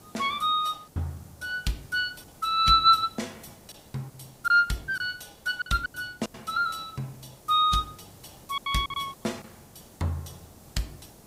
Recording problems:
lossy compression; AAC, log-spectral distance 3 dB, nothing above 14.3 kHz
hiss; SNR 25 dB
lost packets; 7% of the sound replaced, filled with silence

